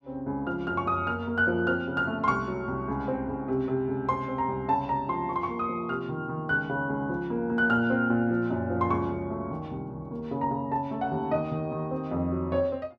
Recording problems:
none

